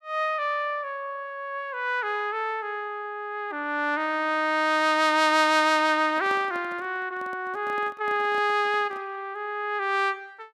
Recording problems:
handling noise; from 6 to 9 s; peak -11 dB vs average level

